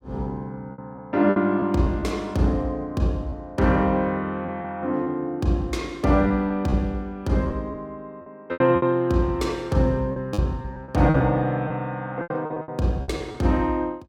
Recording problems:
lost packets; 8% of the sound replaced, filled with repeated pitch periods

